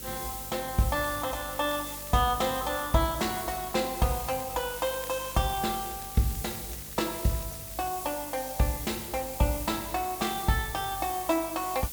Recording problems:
hum; 50 Hz, harmonics up to 600 Hz, SNR 20 dB
background hiss; slope +4 dB per octave, SNR 7 dB
crackle; from 1 to 2 s and from 3.5 to 8 s; loose cable, SNR 20 dB

